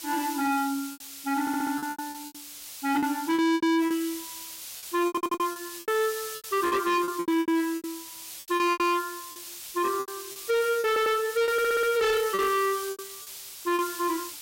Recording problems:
distorted audio; hard clipping, signal-to-distortion ratio 6 dB
hiss; slope +3 dB per octave, SNR 12 dB
lost packets; 15% of the sound replaced, filled with repeated pitch periods
stutter; 4 times, first at 1.5 s

